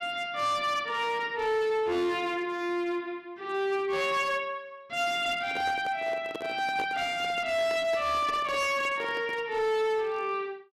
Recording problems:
distortion; hard clipping, signal-to-distortion ratio 11 dB
handling noise; from 5.5 to 9.5 s; peak -4 dB vs average level

